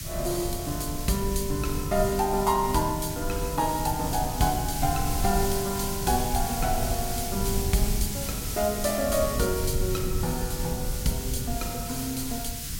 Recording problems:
background hiss; SNR 6 dB
rumble; below 110 Hz, SNR 6 dB

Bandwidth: 16.5 kHz